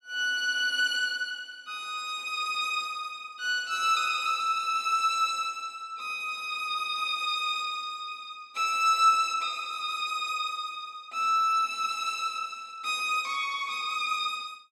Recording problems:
none

